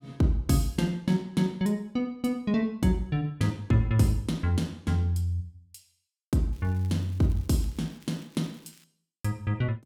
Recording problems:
crackling; from 6.5 to 9 s; loose cable, SNR 29 dB

